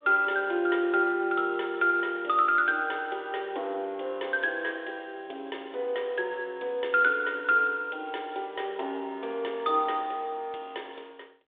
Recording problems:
phone line; 300 Hz to 3.6 kHz, G.726

